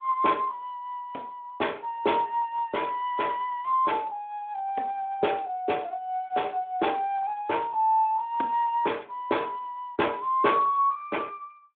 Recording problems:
telephone audio; 240 Hz to 3.6 kHz, Speex

